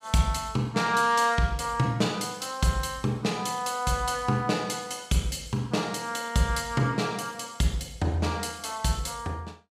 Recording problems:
none

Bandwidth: 15.5 kHz